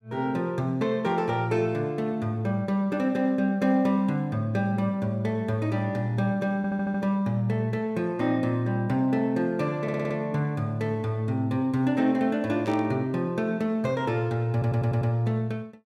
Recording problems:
audio stuttering; at 6.5 s, at 10 s and at 15 s
static burst; at 13 s; peak -14 dB vs average level

